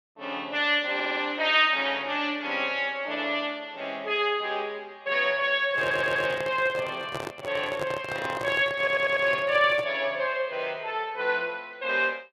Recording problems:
audio stuttering; at 1 s, at 6 s and at 9 s
handling noise; from 5.5 to 10 s; peak -4 dB vs average level

